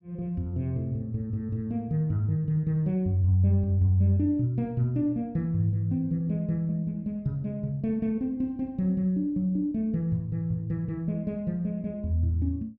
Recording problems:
none

